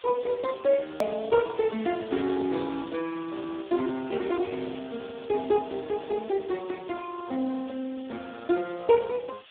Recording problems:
phone line; 220 Hz to 2.5 kHz, Speex
hiss; SNR 19 dB
click at an edit; at 1 s

